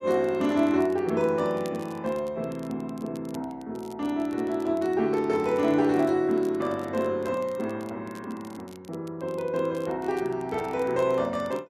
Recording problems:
crackle; vinyl, SNR 26 dB

